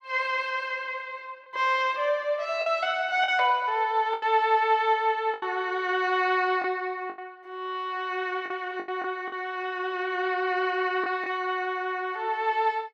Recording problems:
packet loss; 5% of the sound replaced, filled with the last packet

